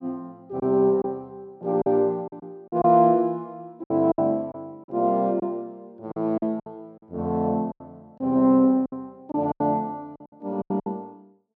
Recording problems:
packet loss; 9% of the sound replaced, filled with silence

